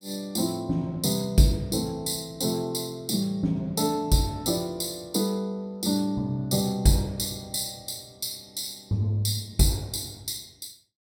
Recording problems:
none

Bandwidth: 16.5 kHz